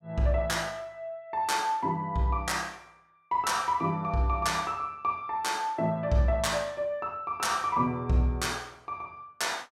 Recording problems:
none

